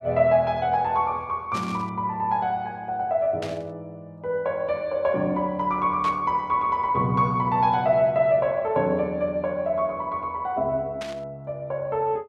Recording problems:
static burst; 4 times, first at 1.5 s; peak -8 dB vs average level

